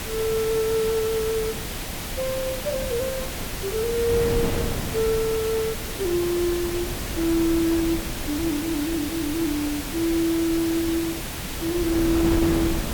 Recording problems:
hiss; slope -1 dB per octave, SNR 7 dB
wind noise; below 400 Hz, SNR 8 dB

